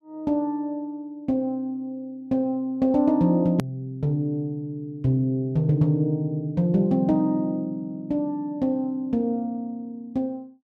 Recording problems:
click at an edit; at 3.5 s

